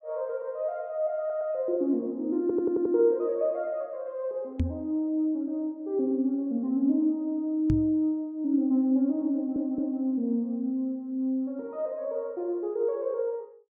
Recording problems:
audio stuttering; at 1 s, at 2.5 s and at 9.5 s
microphone thump; at 4.5 s and at 7.5 s; peak +4 dB vs average level

